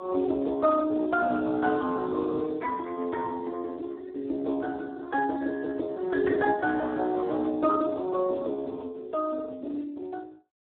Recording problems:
telephone audio; 260 Hz to 2 kHz, Speex

